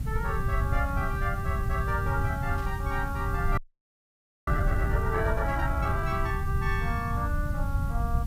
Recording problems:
mains hum; 50 Hz, harmonics up to 300 Hz, SNR 14 dB
background hiss; slope -2 dB per octave, SNR 19 dB
low-frequency rumble; below 110 Hz, SNR -1 dB
burst of static; at 2.5 s; peak -14 dB vs average level
frozen audio; at 3.5 s for 1 s

